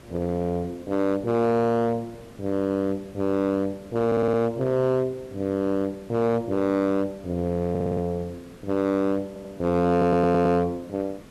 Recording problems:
distorted audio; hard clipping, signal-to-distortion ratio 11 dB
background hiss; SNR 23 dB
audio stuttering; 4 times, first at 4 s

